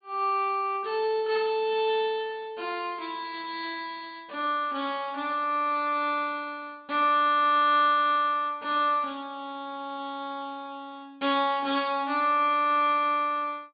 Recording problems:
low-pass filter; nothing above 4.8 kHz

